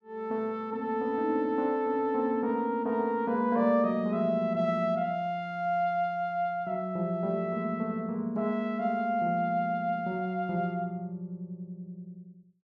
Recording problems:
none

